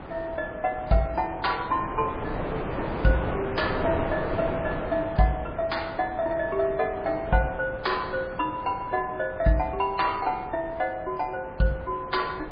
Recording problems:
codec artefacts; MP3, log-spectral distance 3 dB, nothing above 4.6 kHz
wind noise; below 920 Hz, SNR 7 dB

